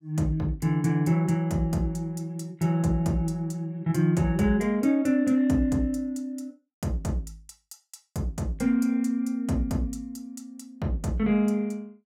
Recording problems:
none

